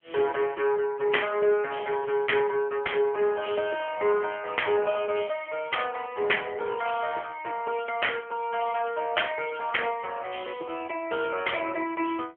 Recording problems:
phone line; 280 Hz to 3.3 kHz, AMR-NB

